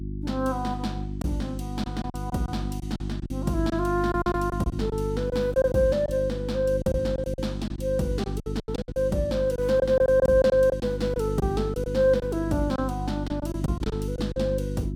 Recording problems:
electrical hum; 50 Hz, harmonics up to 350 Hz, SNR 6 dB
packet loss; 10% of the sound replaced, filled with silence

